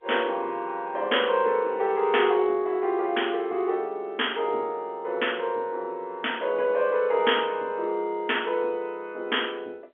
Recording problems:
phone line; 280 Hz to 3.3 kHz, G.711

